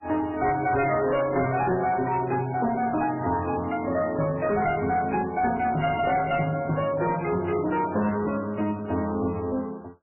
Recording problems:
lossy codec; AAC, then MP3, log-spectral distance 3 dB, nothing above 2.5 kHz
distortion; soft clipping, signal-to-distortion ratio 11 dB

